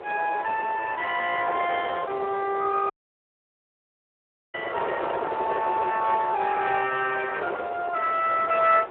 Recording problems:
phone line; 340 Hz to 3.3 kHz, Speex
wind on the microphone; below 920 Hz, SNR 9 dB
dropout; at 3 s for 1.5 s

